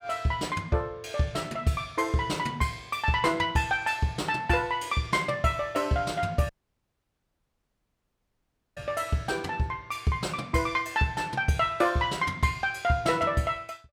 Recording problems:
audio cutting out; at 6.5 s for 2.5 s

